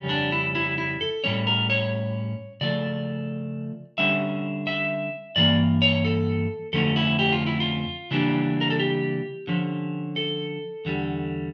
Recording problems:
none

